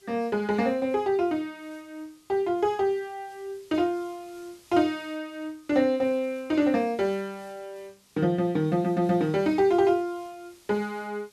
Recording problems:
hiss; SNR 29 dB

